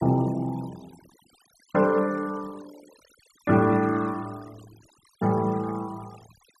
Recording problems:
denoising artefacts; signal-to-artefact ratio 23 dB

